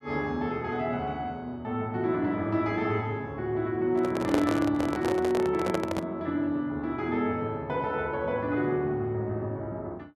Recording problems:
microphone handling noise; from 4 to 6 s; peak +4 dB vs average level

